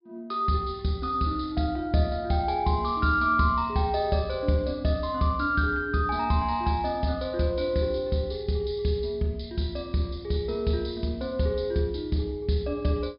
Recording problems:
treble missing; nothing above 5.5 kHz

